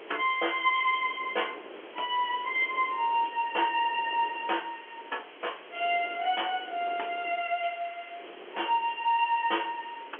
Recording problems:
phone line; 340 Hz to 3.3 kHz, G.711
background hiss; SNR 20 dB
wind noise; below 710 Hz, SNR 20 dB

